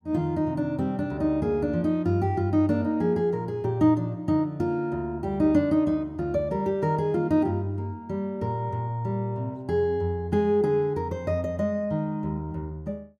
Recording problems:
none

